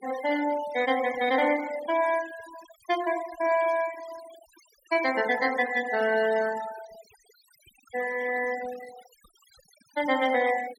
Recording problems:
denoising artefacts; signal-to-artefact ratio 15 dB

